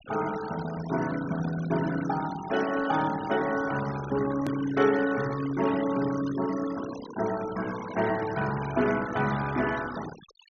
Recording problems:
treble missing; nothing above 6.5 kHz
denoising artefacts; signal-to-artefact ratio 13 dB
edit click; at 4.5 s

